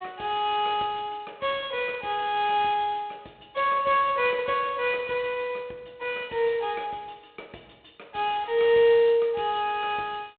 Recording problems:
phone line; 240 Hz to 3.6 kHz, G.726

